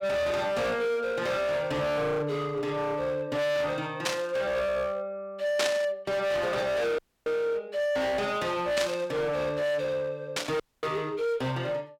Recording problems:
distortion; hard clipping, uneven, signal-to-distortion ratio 6 dB
static burst; 4 times, first at 4 s; peak +5 dB vs average level
audio cutting out; at 7 s and at 11 s

